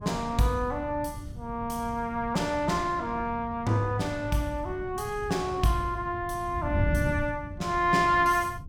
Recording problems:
wind noise; below 140 Hz, SNR 10 dB

